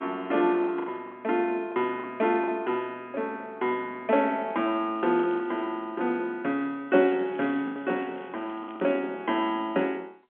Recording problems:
phone line; 190 Hz to 3.4 kHz, G.711
packet loss; 5% of the sound replaced, filled with the last packet
crackle; at 5 s and from 7 to 9 s; loose cable, SNR 28 dB

